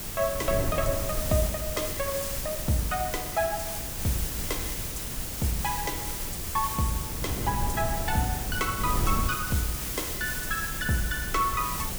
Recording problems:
background hiss; slope 0 dB per octave, SNR 2 dB
wind on the microphone; below 180 Hz, SNR 6 dB

